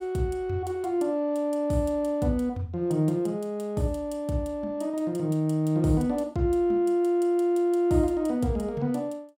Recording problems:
none

